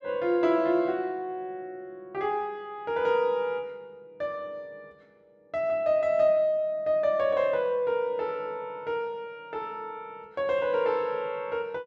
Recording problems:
none

